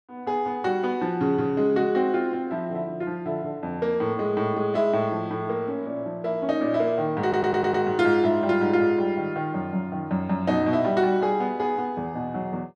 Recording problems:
audio stuttering; at 7 s

